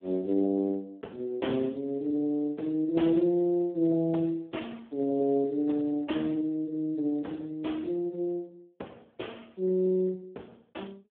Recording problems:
telephone audio; 220 Hz to 3.5 kHz, Speex

